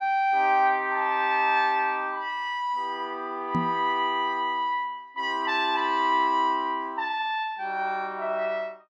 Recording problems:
microphone thump; at 3.5 s; peak +1 dB vs average level

